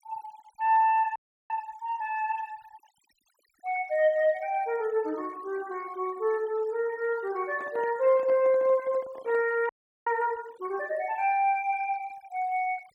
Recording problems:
denoising artefacts; signal-to-artefact ratio 25 dB
audio freezing; at 1 s and at 9.5 s
handling noise; from 7.5 to 9.5 s; peak -12 dB vs average level

